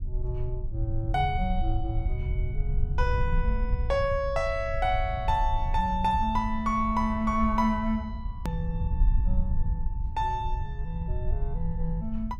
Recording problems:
rumble; below 68 Hz, SNR 2 dB
click at an edit; at 8.5 s

